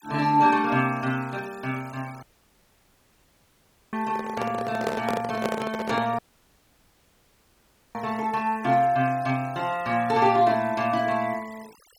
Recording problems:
noise reduction artefacts; signal-to-artefact ratio 22 dB
audio cutting out; at 2 s for 1.5 s and at 6 s for 2 s
microphone handling noise; from 4 to 6 s; peak +1 dB vs average level

